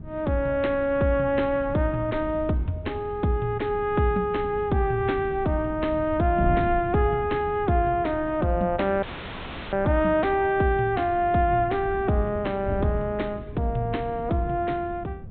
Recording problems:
treble missing; nothing above 4 kHz
wind noise; below 160 Hz, SNR 13 dB
audio cutting out; at 9 s for 0.5 s; filled with static

